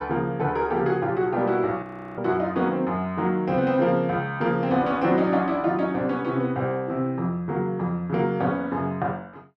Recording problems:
frozen audio; at 2 s

